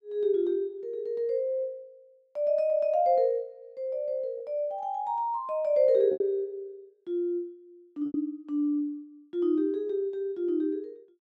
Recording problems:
lost packets; 1.9% of the sound replaced, filled with repeated pitch periods

